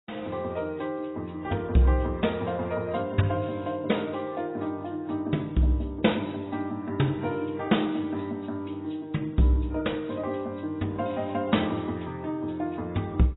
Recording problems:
codec artefacts; AAC, log-spectral distance 4 dB, nothing above 3.8 kHz

